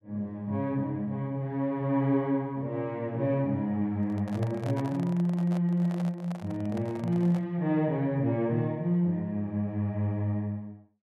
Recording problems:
microphone handling noise; from 4 to 7.5 s; peak -7 dB vs average level

